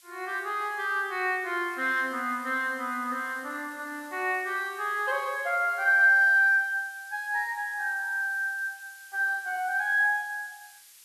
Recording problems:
background hiss; slope +5 dB per octave, SNR 24 dB

